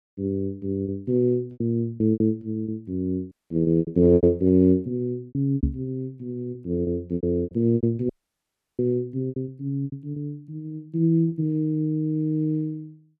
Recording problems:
lost packets; 11% of the sound replaced, filled with repeated pitch periods
dropout; at 3.5 s and at 8 s for 0.5 s
microphone thump; at 5.5 s; peak +3 dB vs average level

